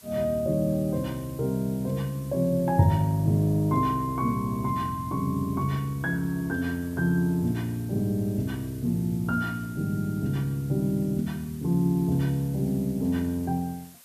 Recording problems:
background hiss; slope 0 dB per octave, SNR 22 dB

